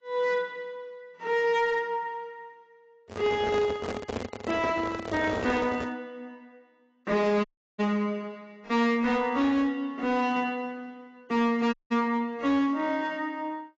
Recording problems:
codec artefacts; AAC, log-spectral distance 2 dB
distorted audio; hard clipping, uneven, signal-to-distortion ratio 11 dB
handling noise; from 3 to 6 s; peak -1 dB vs average level
audio cutting out; at 7.5 s and at 12 s

